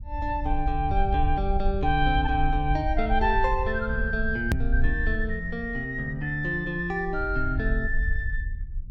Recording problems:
rumble; below 60 Hz, SNR 3 dB
hard cut with a click; at 4.5 s

